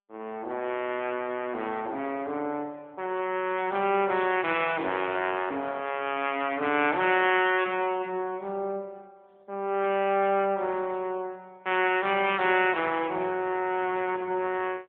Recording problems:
telephone audio; 220 Hz to 3.4 kHz, AMR-NB

